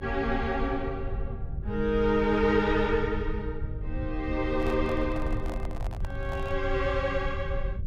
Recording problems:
electrical hum; 50 Hz, harmonics up to 600 Hz, SNR 21 dB
low-frequency rumble; below 86 Hz, SNR 7 dB
microphone handling noise; from 4.5 to 6.5 s; peak -8 dB vs average level

